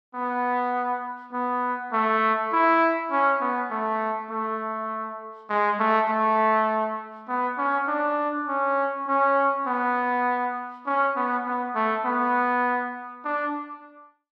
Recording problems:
none

